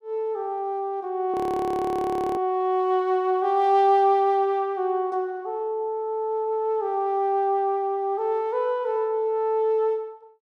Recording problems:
audio freezing; at 1.5 s for 1 s

